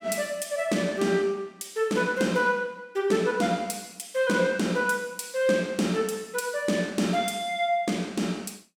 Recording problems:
none

